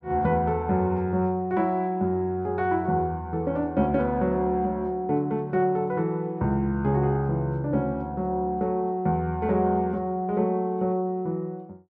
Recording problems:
none

